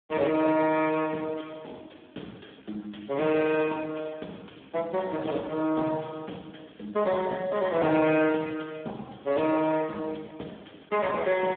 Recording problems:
telephone audio; 170 Hz to 3.5 kHz, Speex

